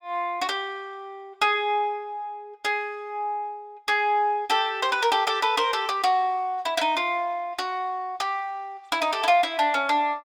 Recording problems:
none

